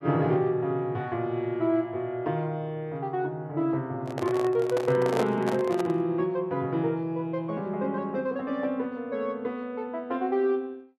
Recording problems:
microphone handling noise; from 4 to 6 s; peak +3 dB vs average level

